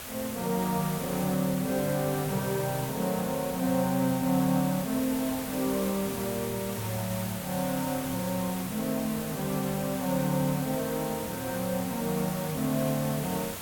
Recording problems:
hiss; slope -2 dB per octave, SNR 7 dB

